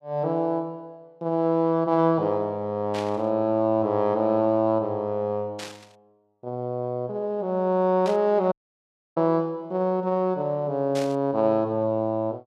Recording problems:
burst of static; 4 times, first at 3 s; peak -8 dB vs average level
audio cutting out; at 8.5 s for 0.5 s

